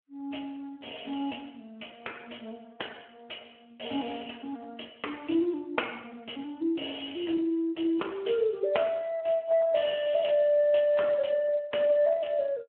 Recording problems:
phone line; 280 Hz to 3.3 kHz, Speex

